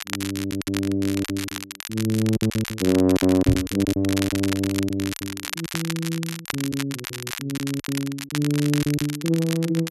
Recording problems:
crackling; vinyl, SNR 8 dB
packet loss; 12% of the sound replaced, filled with silence
microphone thump; at 3.5 s; peak +8 dB vs average level

